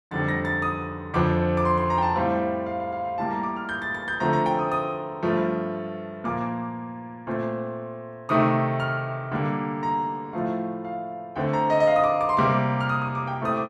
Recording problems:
none

